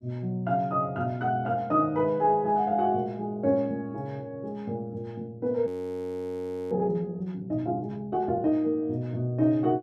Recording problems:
frozen audio; at 5.5 s for 1 s

